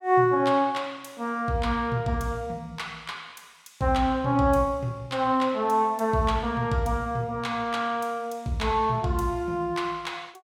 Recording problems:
none

